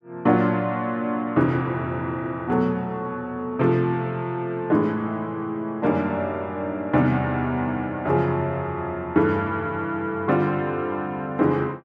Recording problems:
none

